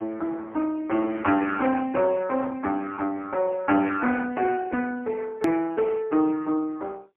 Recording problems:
phone line; 220 Hz to 3.2 kHz, AMR-NB, then MP3
hard cut with a click; at 5.5 s

